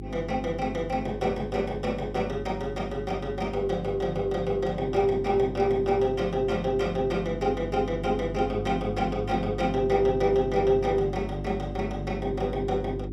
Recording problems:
hum; 50 Hz, harmonics up to 400 Hz, SNR 9 dB

